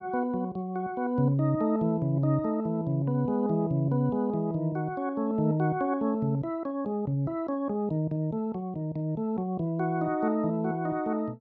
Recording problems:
none

